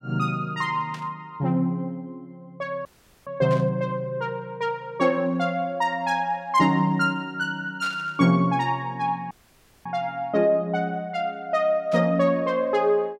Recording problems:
static burst; 4 times, first at 1 s; peak -11 dB vs average level
audio cutting out; at 3 s and at 9.5 s for 0.5 s

